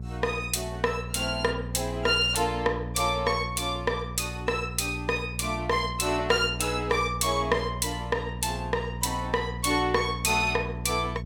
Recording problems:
hum; 60 Hz, harmonics up to 420 Hz, SNR 9 dB

